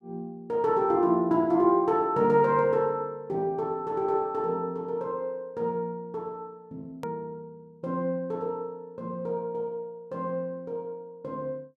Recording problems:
click at an edit; at 7 s

